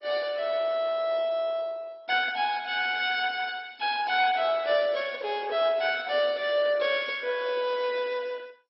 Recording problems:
lossy compression; MP2, log-spectral distance 4 dB, nothing above 4.8 kHz

